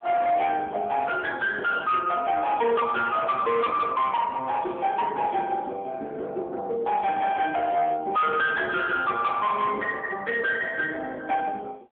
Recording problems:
phone line; 280 Hz to 3.7 kHz, AMR-NB
distorted audio; hard clipping, signal-to-distortion ratio 10 dB

